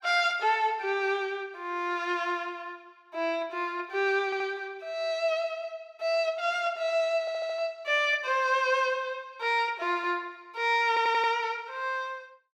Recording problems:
audio stuttering; at 4.5 s, at 7 s and at 11 s

